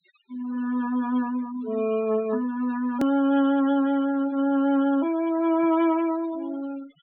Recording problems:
treble missing; nothing above 4 kHz
noise reduction artefacts; signal-to-artefact ratio 18 dB
click at an edit; at 3 s

